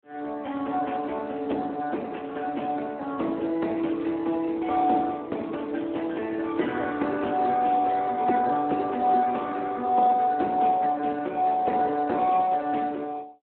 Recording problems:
phone line; 220 Hz to 3.5 kHz, Speex

